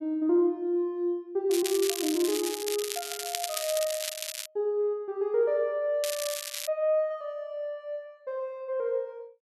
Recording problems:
crackle; from 1.5 to 4.5 s and at 6 s; loose cable, SNR 4 dB

